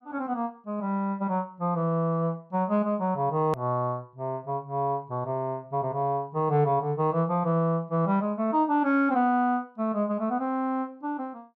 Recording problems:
click at an edit; at 3.5 s

